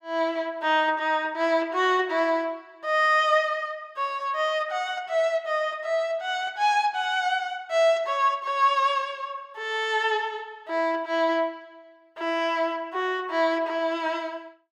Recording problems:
none

